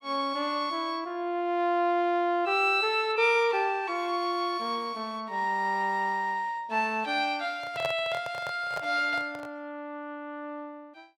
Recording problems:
handling noise; from 7.5 to 9.5 s; peak -3 dB vs average level

